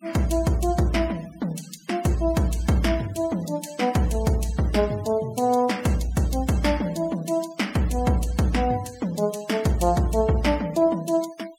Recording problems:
denoising artefacts; signal-to-artefact ratio 20 dB

